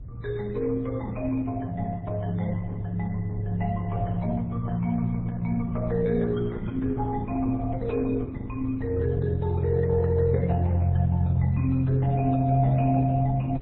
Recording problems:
codec artefacts; Opus, then MP3, log-spectral distance 2 dB, nothing above 3.8 kHz
wind noise; below 120 Hz, SNR 14 dB

